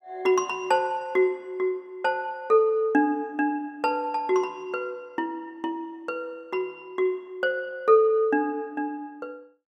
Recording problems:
none

